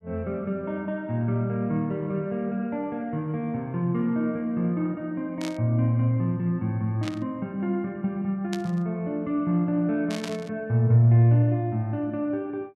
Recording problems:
burst of static; 4 times, first at 5.5 s; peak -6 dB vs average level

